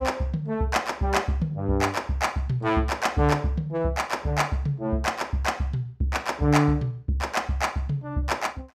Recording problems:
none

